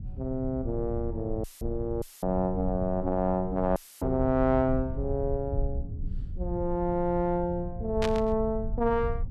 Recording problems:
rumble; below 88 Hz, SNR 8 dB
audio cutting out; at 1.5 s, at 2 s and at 4 s; filled with static
burst of static; at 8 s; peak 0 dB vs average level

